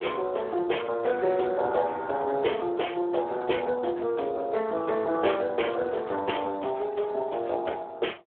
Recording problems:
phone line; 320 Hz to 3.4 kHz, Speex

